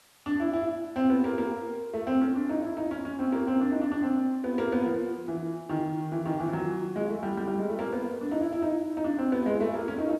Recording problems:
background hiss; slope -1 dB per octave, SNR 30 dB

